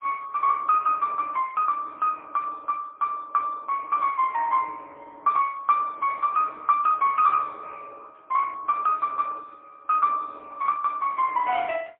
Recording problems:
telephone audio; 390 Hz to 3.3 kHz, AMR-NB, then MP3

